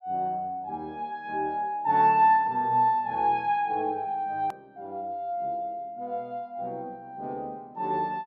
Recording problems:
edit click; at 4.5 s

